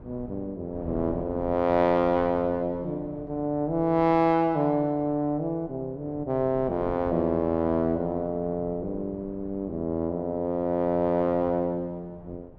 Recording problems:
wind on the microphone; below 350 Hz, SNR 18 dB

